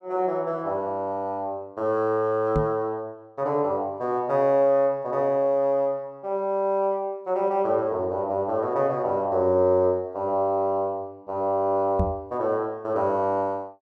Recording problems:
microphone bump; at 2.5 s and at 12 s; peak +3 dB vs average level

